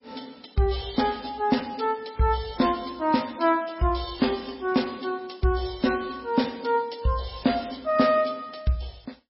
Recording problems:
lossy compression; MP3, log-spectral distance 8 dB, nothing above 5.5 kHz

